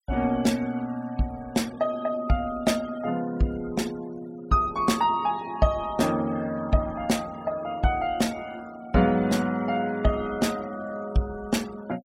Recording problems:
denoising artefacts; signal-to-artefact ratio 21 dB

